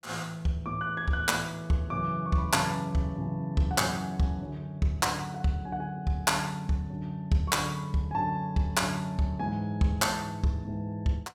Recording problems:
none

